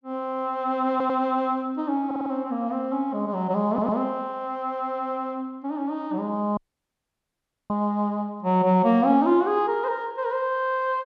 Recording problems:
stutter; at 1 s, at 2 s and at 3.5 s
audio cutting out; at 6.5 s for 1 s

